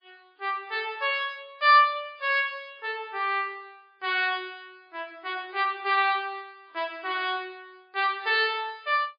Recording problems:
codec artefacts; MP3, log-spectral distance 3 dB, nothing above 4.1 kHz

